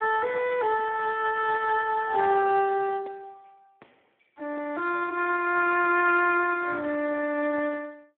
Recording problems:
telephone audio; 300 Hz to 3.5 kHz, Speex

